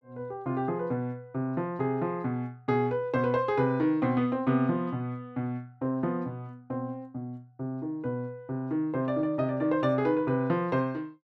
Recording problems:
none

